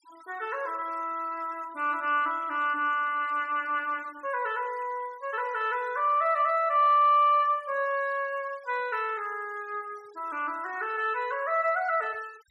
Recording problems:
noise reduction artefacts; signal-to-artefact ratio 27 dB

